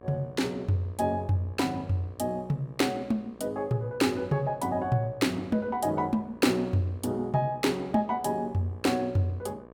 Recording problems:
hum; 60 Hz, harmonics up to 1.7 kHz, SNR 22 dB

